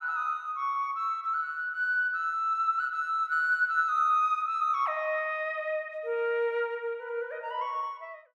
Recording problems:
none

